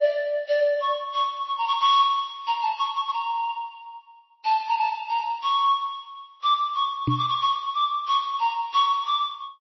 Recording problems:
lossy codec; MP3, then MP3, log-spectral distance 2 dB, nothing above 5.8 kHz
knock on the microphone; at 7 s; peak +3 dB vs average level

